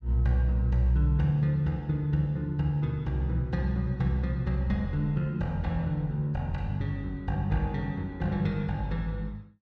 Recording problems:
none

